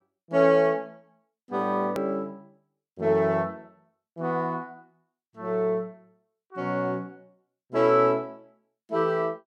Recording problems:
hard cut with a click; at 2 s

